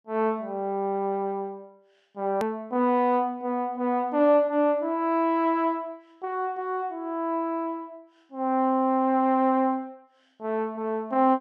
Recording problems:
click at an edit; at 2.5 s

